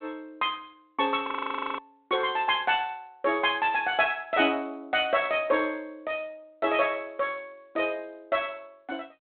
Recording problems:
telephone audio; 190 Hz to 3.7 kHz, G.726
audio freezing; at 1.5 s for 0.5 s

